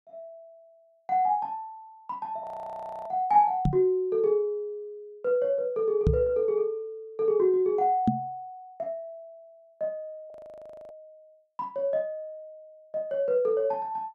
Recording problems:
frozen audio; at 2.5 s for 0.5 s and at 10 s for 0.5 s
microphone thump; at 3.5 s, at 6 s and at 8 s; peak +7 dB vs average level

